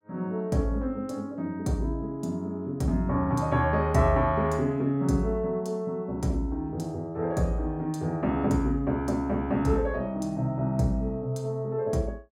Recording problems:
none

